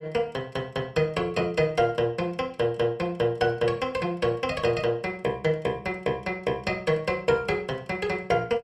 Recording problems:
none

